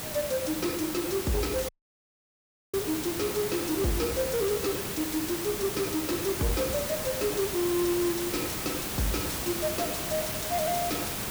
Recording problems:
distortion; soft clipping, signal-to-distortion ratio 11 dB
hiss; slope -3 dB per octave, SNR 2 dB
audio cutting out; at 1.5 s for 1 s

